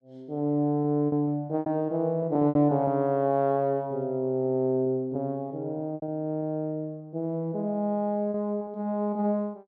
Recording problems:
packet loss; 7% of the sound replaced, filled with repeated pitch periods

